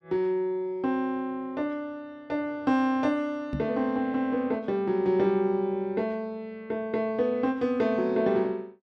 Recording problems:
knock on the microphone; at 3.5 s; peak -1 dB vs average level

